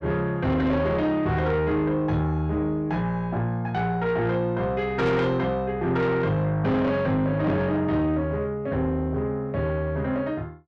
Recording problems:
distorted audio; soft clipping, signal-to-distortion ratio 10 dB

